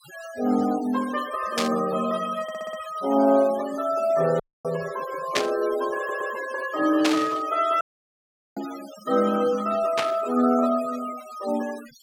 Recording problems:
denoising artefacts; signal-to-artefact ratio 17 dB
burst of static; 4 times, first at 1.5 s; peak +5 dB vs average level
audio stuttering; at 2.5 s and at 6 s
dropout; at 4.5 s and at 8 s for 1 s

